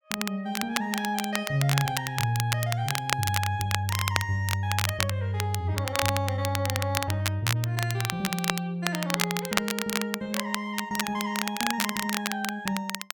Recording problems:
crackle; vinyl, SNR 2 dB

